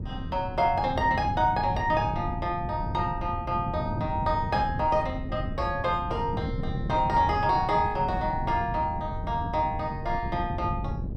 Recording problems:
wind noise; below 180 Hz, SNR 6 dB

